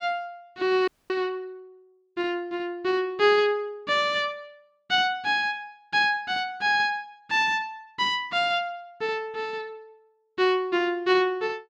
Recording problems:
dropout; at 1 s

